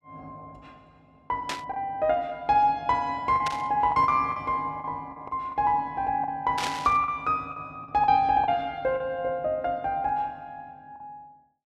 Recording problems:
lost packets; 7% of the sound replaced, filled with the last packet
static burst; at 1.5 s, at 3.5 s and at 6.5 s; peak 0 dB vs average level

